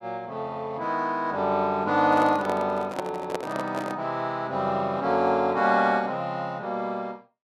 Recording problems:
microphone handling noise; from 2 to 4 s; peak 0 dB vs average level

